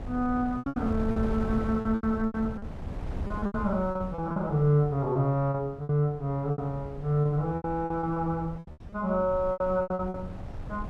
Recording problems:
wind on the microphone; below 200 Hz, SNR 11 dB
lost packets; 16% of the sound replaced, filled with repeated pitch periods

